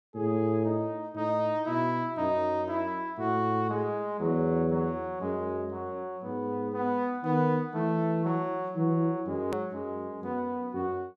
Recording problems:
click at an edit; at 9.5 s

